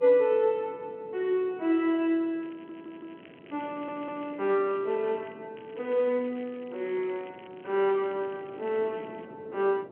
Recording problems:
telephone audio; 260 Hz to 3.2 kHz, G.711
wind noise; below 490 Hz, SNR 20 dB
crackle; from 2.5 to 5.5 s and from 5.5 to 9.5 s; loose cable, SNR 27 dB
stutter; at 2.5 s and at 3.5 s

